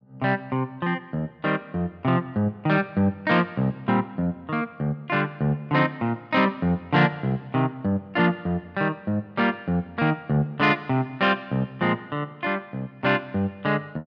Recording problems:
none

